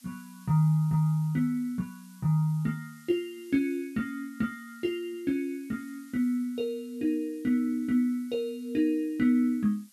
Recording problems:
hiss; slope +4 dB per octave, SNR 27 dB

